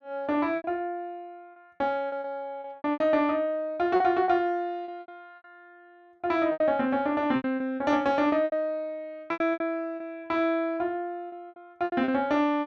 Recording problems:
packet loss; 12% of the sound replaced, filled with repeated pitch periods

